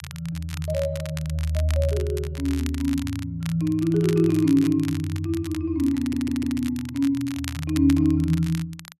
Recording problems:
crackle; vinyl, SNR 16 dB
stutter; at 6 s

